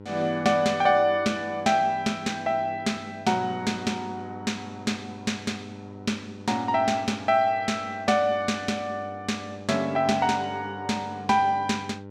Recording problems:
hum; 50 Hz, harmonics up to 1 kHz, SNR 17 dB

